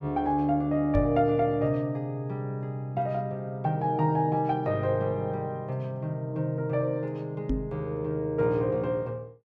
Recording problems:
microphone bump; at 1 s and at 7.5 s; peak +2 dB vs average level

